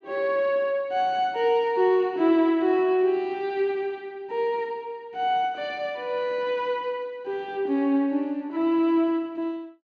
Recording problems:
none

